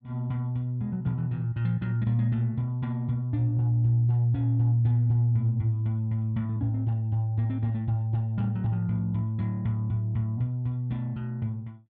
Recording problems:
none

